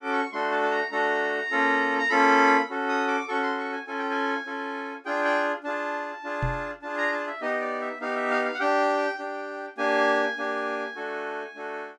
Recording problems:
microphone thump; at 6.5 s; peak 0 dB vs average level

